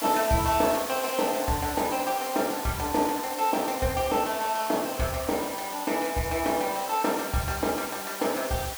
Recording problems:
hiss; SNR 8 dB

